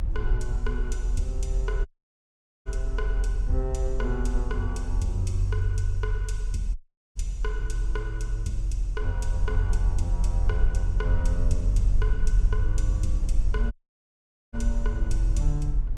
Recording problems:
low-frequency rumble; below 44 Hz, strongest tone 42 Hz, SNR -5 dB
audio cutting out; at 2 s for 1 s, at 7 s and at 14 s for 1 s

